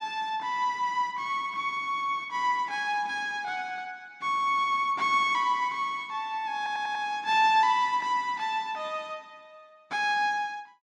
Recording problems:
stutter; at 6.5 s

